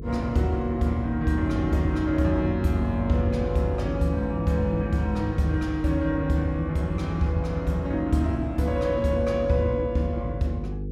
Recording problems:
electrical hum; 50 Hz, harmonics up to 500 Hz, SNR 11 dB

